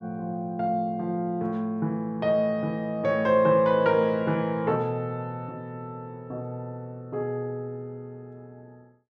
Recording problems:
none

